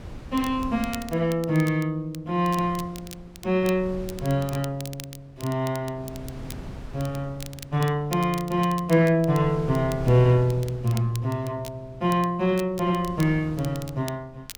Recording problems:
wind on the microphone; below 220 Hz, SNR 17 dB
crackling; vinyl, SNR 19 dB

